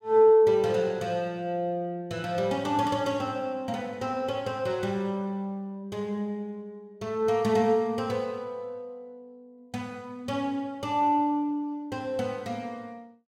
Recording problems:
none

